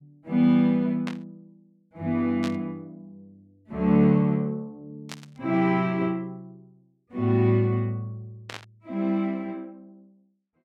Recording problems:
burst of static; 4 times, first at 1 s; peak -8 dB vs average level

